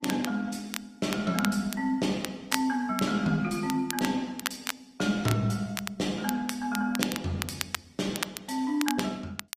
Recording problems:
lossy compression; Opus, log-spectral distance 3 dB, nothing above 14.7 kHz
crackling; vinyl, SNR 7 dB

